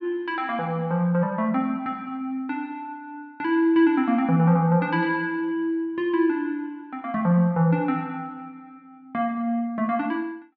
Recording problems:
none

